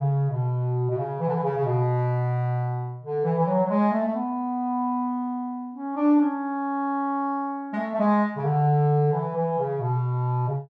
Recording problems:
none

